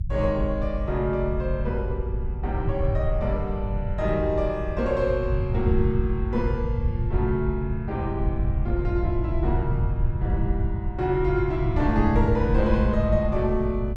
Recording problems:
low-frequency rumble; below 100 Hz, SNR 1 dB

